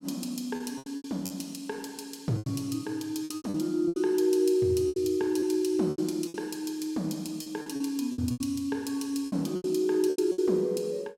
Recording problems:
packet loss; 12% of the sound replaced, filled with repeated pitch periods

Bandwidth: 16.5 kHz